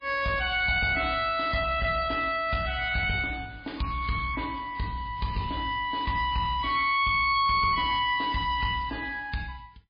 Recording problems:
lossy codec; MP3, log-spectral distance 4 dB, nothing above 4.6 kHz
distorted audio; soft clipping, signal-to-distortion ratio 11 dB

